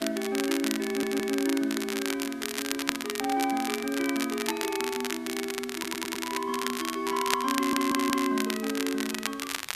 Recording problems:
background hiss; SNR 21 dB
crackle; vinyl, SNR 4 dB
stutter; at 1 s, at 5.5 s and at 7.5 s

